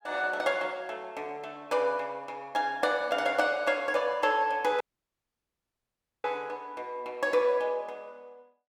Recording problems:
audio cutting out; at 5 s for 1.5 s

